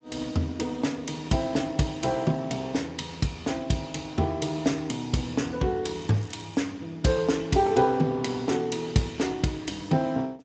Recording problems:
lossy compression; Speex, log-spectral distance 5 dB, nothing above 7.8 kHz
crackling; at 6 s; loose cable, SNR 26 dB

